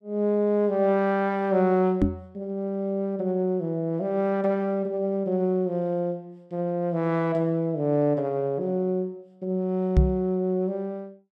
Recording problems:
knock on the microphone; at 2 s and at 10 s; peak +9 dB vs average level

